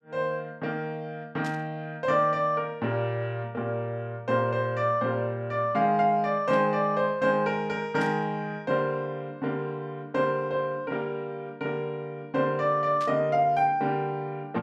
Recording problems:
static burst; 4 times, first at 1.5 s; peak -10 dB vs average level

